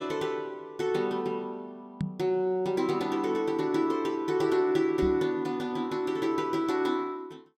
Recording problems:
microphone bump; at 2 s and at 5 s; peak +1 dB vs average level

